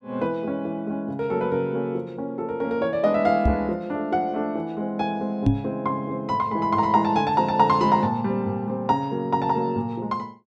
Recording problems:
knock on the microphone; at 3.5 s and at 5.5 s; peak +8 dB vs average level

